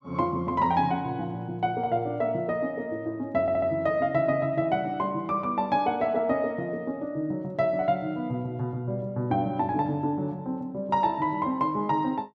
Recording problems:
stutter; at 3.5 s

